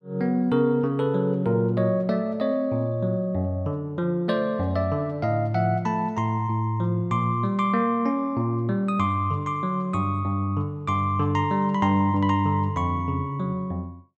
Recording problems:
none

